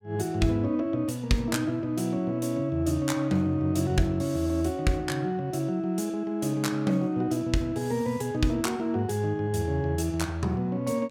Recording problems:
none

